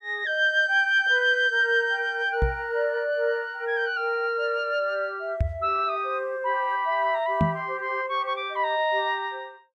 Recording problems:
microphone bump; at 2.5 s, at 5.5 s and at 7.5 s; peak +4 dB vs average level

